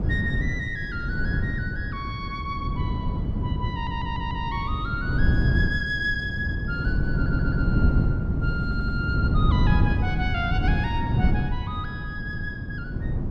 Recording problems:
wind on the microphone; below 170 Hz, SNR -5 dB
audio stuttering; at 3.5 s, at 7 s and at 8.5 s

